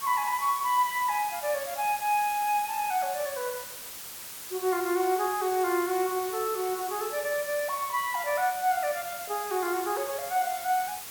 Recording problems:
hiss; slope 0 dB per octave, SNR 9 dB

